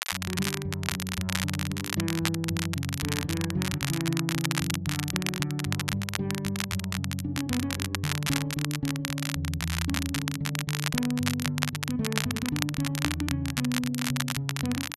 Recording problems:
crackle; vinyl, SNR 2 dB

